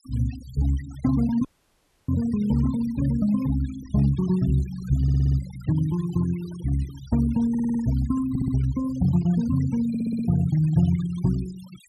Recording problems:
denoising artefacts; signal-to-artefact ratio 21 dB
audio cutting out; at 1.5 s for 0.5 s
audio stuttering; 4 times, first at 5 s

